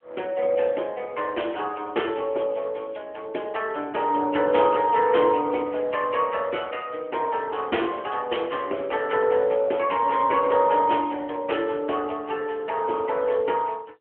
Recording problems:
phone line; 260 Hz to 3.2 kHz, AMR-NB

